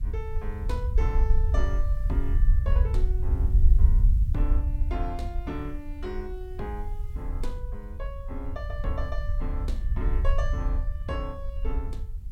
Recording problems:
background hiss; SNR 26 dB
rumble; below 62 Hz, SNR -10 dB

